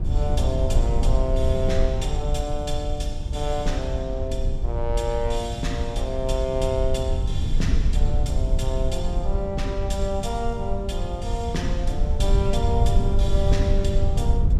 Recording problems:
low-frequency rumble; below 76 Hz, SNR -3 dB

